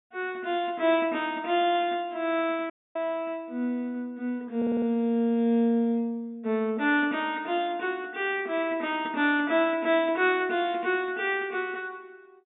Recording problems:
treble cut off; nothing above 4 kHz
dropout; at 2.5 s
stutter; at 4.5 s

